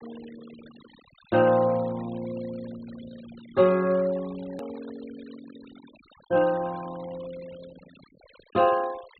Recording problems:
treble missing; nothing above 4.4 kHz
noise reduction artefacts; signal-to-artefact ratio 22 dB
hard cut with a click; at 4.5 s

